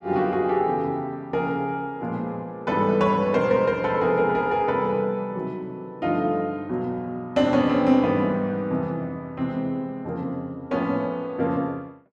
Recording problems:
none

